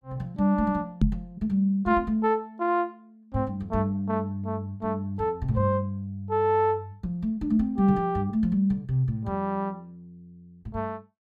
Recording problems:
microphone thump; at 1 s; peak +8 dB vs average level

